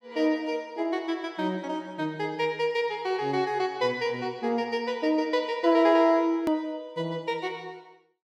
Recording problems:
hard cut with a click; at 6.5 s

